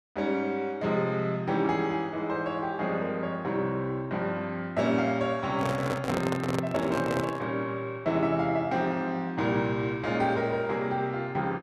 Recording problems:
handling noise; from 5.5 to 7.5 s; peak +2 dB vs average level

